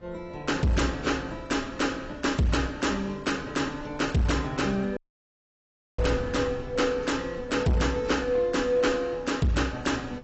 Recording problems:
codec artefacts; AAC, log-spectral distance 4 dB, nothing above 7.8 kHz
distortion; hard clipping, signal-to-distortion ratio 11 dB
wind noise; below 220 Hz, SNR 18 dB
audio cutting out; at 5 s for 1 s

